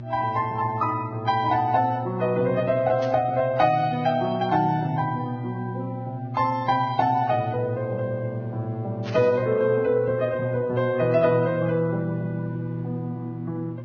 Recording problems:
lossy codec; Vorbis, log-spectral distance 2 dB, nothing above 5.5 kHz
electrical hum; 60 Hz, harmonics up to 600 Hz, SNR 10 dB
static burst; at 3 s and at 9 s; peak -9 dB vs average level

